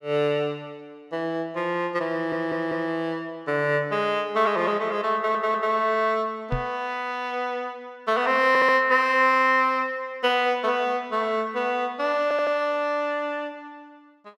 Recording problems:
audio stuttering; 4 times, first at 2 s
knock on the microphone; at 6.5 s; peak -1 dB vs average level

